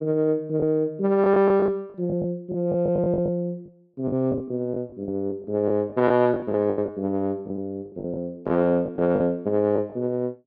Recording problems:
packet loss; 11% of the sound replaced, filled with the last packet

